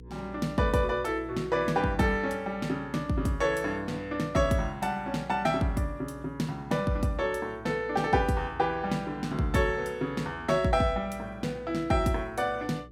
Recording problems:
electrical hum; 60 Hz, harmonics up to 480 Hz, SNR 21 dB

